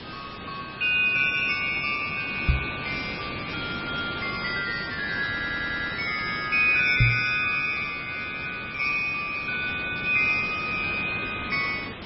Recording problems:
lossy codec; MP3, log-spectral distance 13 dB, nothing above 4.6 kHz
background hiss; SNR 11 dB
knock on the microphone; at 2.5 s and at 7 s; peak +7 dB vs average level
audio stuttering; at 5.5 s

